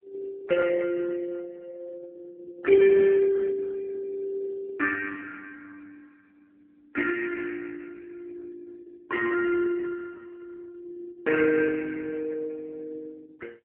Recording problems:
phone line; 320 Hz to 2.3 kHz, AMR-NB

